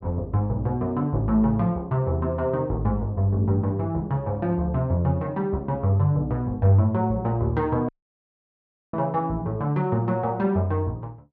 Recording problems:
dropout; at 8 s for 1 s

